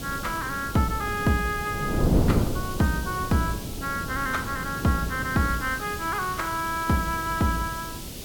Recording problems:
background hiss; SNR 11 dB
wind on the microphone; below 320 Hz, SNR 5 dB

